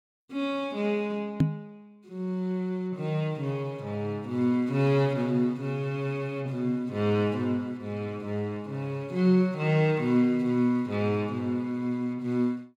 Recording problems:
knock on the microphone; at 1.5 s; peak +8 dB vs average level

